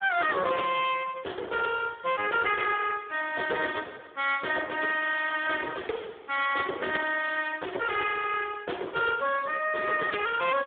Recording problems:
phone line; 340 Hz to 3.5 kHz, Speex

